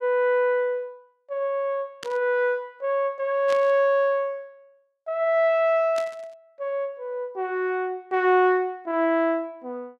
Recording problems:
static burst; at 2 s, at 3.5 s and at 6 s; peak -8 dB vs average level

